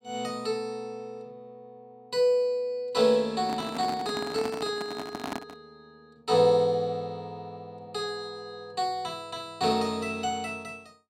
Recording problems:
handling noise; from 3.5 to 5.5 s; peak -2 dB vs average level

